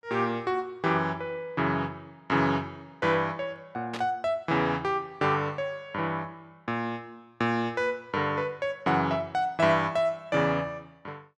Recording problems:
static burst; at 4 s; peak -5 dB vs average level

